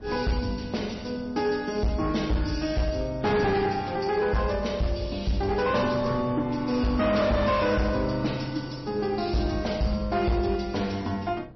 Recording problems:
codec artefacts; MP3, log-spectral distance 5 dB, nothing above 5.7 kHz
distortion; hard clipping, signal-to-distortion ratio 11 dB
wind noise; below 350 Hz, SNR 17 dB

